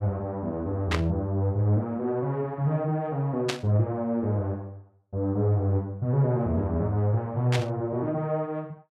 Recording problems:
static burst; at 1 s, at 3.5 s and at 7.5 s; peak +2 dB vs average level

